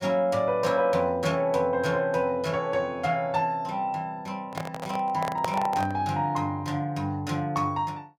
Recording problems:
handling noise; from 4.5 to 6 s; peak +1 dB vs average level

